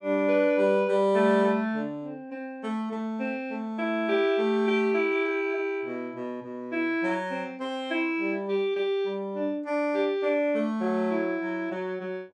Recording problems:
none

